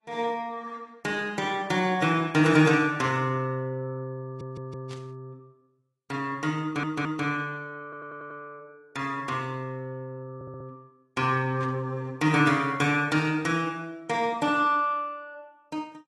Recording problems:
lossy codec; AAC, log-spectral distance 2 dB, nothing above 11 kHz
audio stuttering; 4 times, first at 4 s
burst of static; at 5 s and at 12 s; peak -15 dB vs average level

